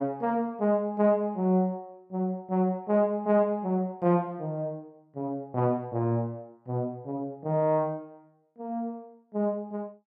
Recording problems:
none

